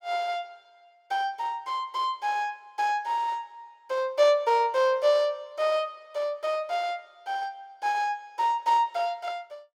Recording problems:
none

